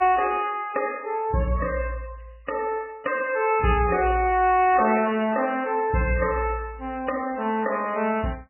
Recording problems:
lossy codec; MP3, log-spectral distance 6 dB, nothing above 2.7 kHz

